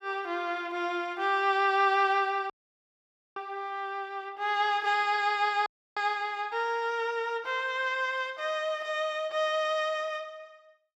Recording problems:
audio cutting out; at 2.5 s for 1 s and at 5.5 s

